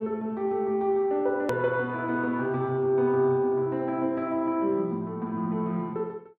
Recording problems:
edit click; at 1.5 s

